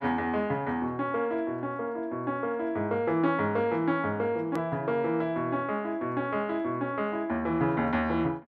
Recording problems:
hard cut with a click; at 4.5 s

